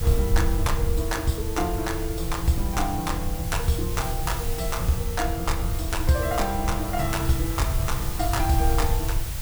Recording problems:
background hiss; slope -1 dB per octave, SNR 8 dB
rumble; below 82 Hz, SNR 2 dB

